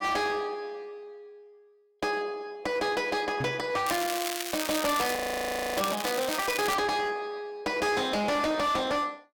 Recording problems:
distorted audio; hard clipping, signal-to-distortion ratio 8 dB
microphone bump; at 3.5 s; peak -2 dB vs average level
crackling; from 4 to 7 s; loose cable, SNR 5 dB
audio freezing; at 5 s for 0.5 s

